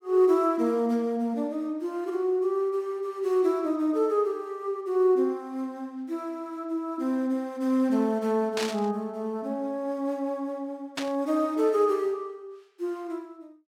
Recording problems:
burst of static; at 8.5 s and at 11 s; peak -1 dB vs average level

